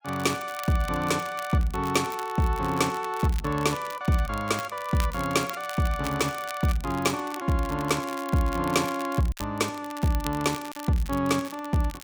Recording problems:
crackle; vinyl, SNR 15 dB
lost packets; 1% of the sound replaced, filled with silence

